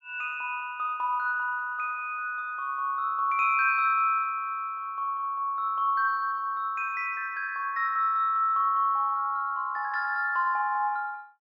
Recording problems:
none

